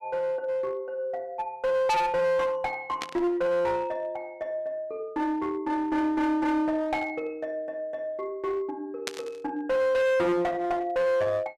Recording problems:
distortion; hard clipping, uneven, signal-to-distortion ratio 7 dB
static burst; at 3 s and at 9 s; peak +1 dB vs average level

